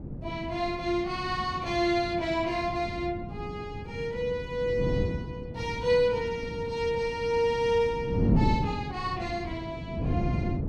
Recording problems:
wind noise; below 250 Hz, SNR 5 dB

